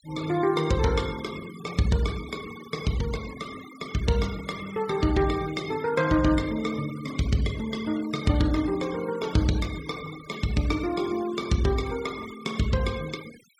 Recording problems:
noise reduction artefacts; signal-to-artefact ratio 17 dB

